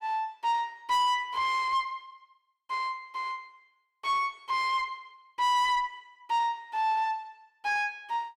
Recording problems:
distortion; soft clipping, signal-to-distortion ratio 10 dB

